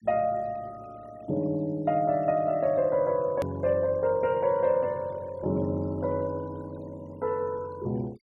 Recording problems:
denoising artefacts; signal-to-artefact ratio 26 dB
click at an edit; at 3.5 s

